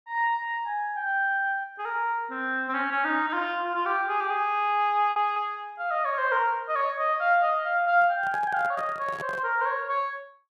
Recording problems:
lost packets; 1.4% of the sound replaced, filled with repeated pitch periods
microphone handling noise; from 8 to 9.5 s; peak -8 dB vs average level

